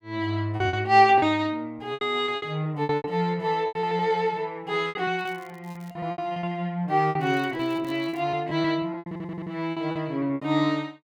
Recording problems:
packet loss; 14% of the sound replaced, filled with repeated pitch periods
crackling; at 5 s and from 7 to 8 s; loose cable, SNR 29 dB
stutter; at 9 s

